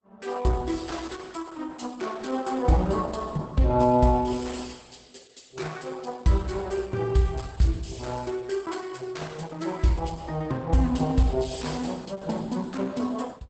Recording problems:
lossy compression; Opus, log-spectral distance 4 dB, nothing above 8 kHz

